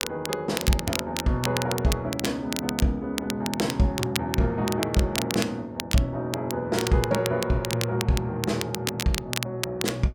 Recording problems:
crackling; vinyl, SNR 6 dB

